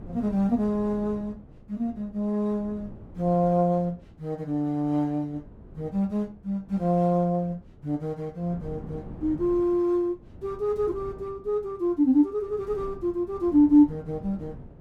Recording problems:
wind noise; below 260 Hz, SNR 19 dB

